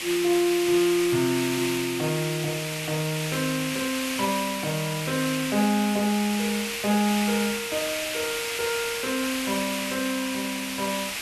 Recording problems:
background hiss; SNR 3 dB

